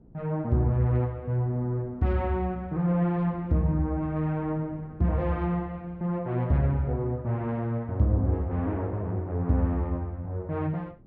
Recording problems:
wind noise; below 270 Hz, SNR 23 dB

